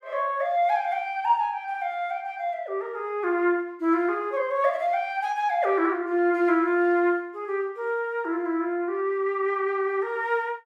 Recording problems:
none

